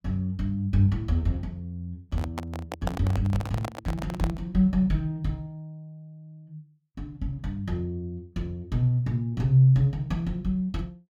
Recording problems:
microphone handling noise; from 2 to 4.5 s; peak -1 dB vs average level

